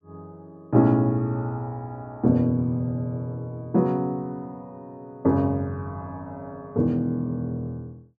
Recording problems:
none

